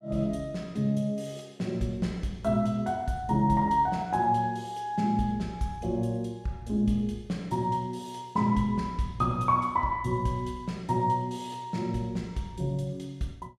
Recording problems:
none

